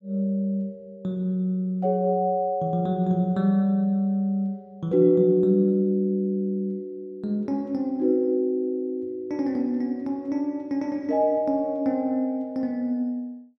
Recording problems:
none

